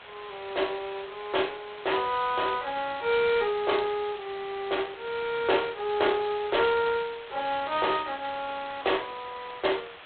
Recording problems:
phone line; 340 Hz to 4 kHz, G.726
background hiss; SNR 17 dB

